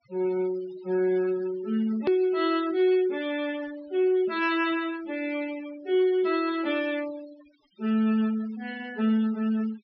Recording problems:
low-pass filter; nothing above 5.5 kHz
noise reduction artefacts; signal-to-artefact ratio 19 dB
click at an edit; at 2 s

